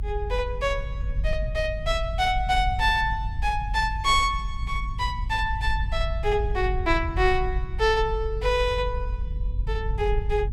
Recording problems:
low-frequency rumble; below 64 Hz, strongest tone 48 Hz, SNR 5 dB

